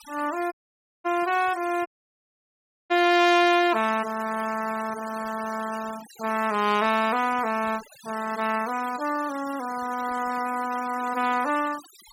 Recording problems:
noise reduction artefacts; signal-to-artefact ratio 16 dB
audio cutting out; at 0.5 s for 0.5 s and at 2 s for 1 s

